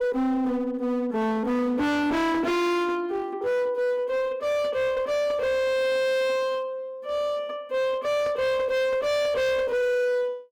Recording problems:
distortion; hard clipping, uneven, signal-to-distortion ratio 6 dB

